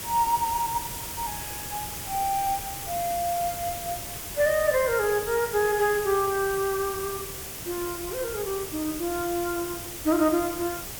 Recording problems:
background hiss; slope -2 dB per octave, SNR 7 dB

